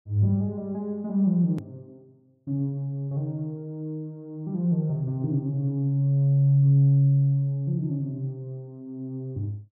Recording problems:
click at an edit; at 1.5 s

